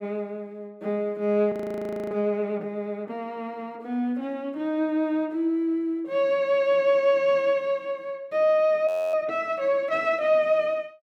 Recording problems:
frozen audio; at 1.5 s for 0.5 s and at 9 s

